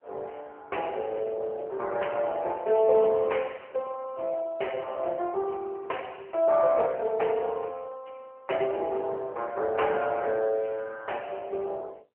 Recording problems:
telephone audio; 340 Hz to 2.9 kHz, AMR-NB

